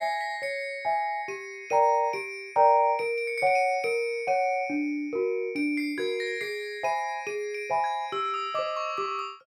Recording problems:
none

